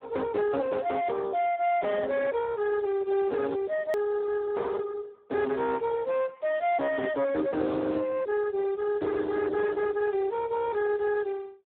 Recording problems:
telephone audio; 280 Hz to 2.3 kHz, Speex
distorted audio; soft clipping, signal-to-distortion ratio 10 dB
click at an edit; at 4 s

